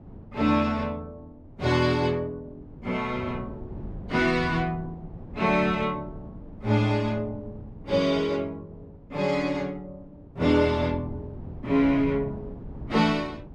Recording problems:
wind noise; below 250 Hz, SNR 17 dB

